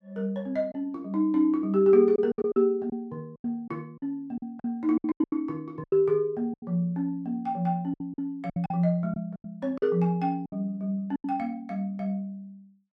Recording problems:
lost packets; 10% of the sound replaced, filled with silence

